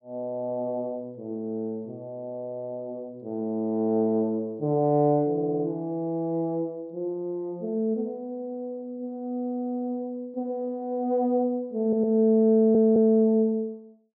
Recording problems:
low-pass filter; nothing above 5.5 kHz
audio stuttering; at 5.5 s, at 12 s and at 13 s

